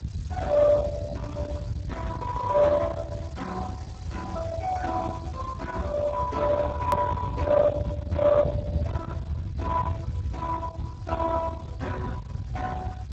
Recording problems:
codec artefacts; Speex, log-spectral distance 3 dB
distortion; soft clipping, signal-to-distortion ratio 10 dB
background hiss; slope 0 dB per octave, SNR 28 dB
rumble; below 590 Hz, SNR 6 dB
hard cut with a click; at 7 s

